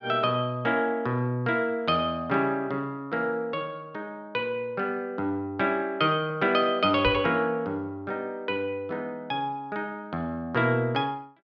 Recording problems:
knock on the microphone; at 7 s; peak -2 dB vs average level

